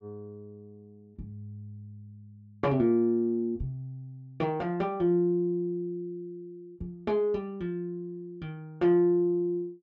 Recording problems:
none

